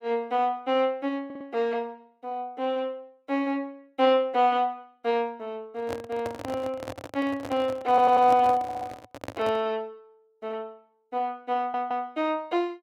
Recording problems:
stutter; 4 times, first at 1.5 s
microphone handling noise; from 5.5 to 9.5 s; peak -4 dB vs average level

